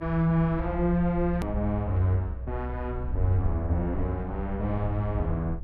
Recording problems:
low-frequency rumble; below 66 Hz, SNR 7 dB
hard cut with a click; at 1.5 s

